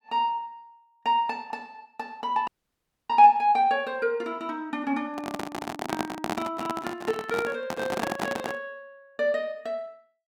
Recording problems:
dropout; at 2.5 s for 0.5 s
handling noise; from 5 to 8.5 s; peak +2 dB vs average level

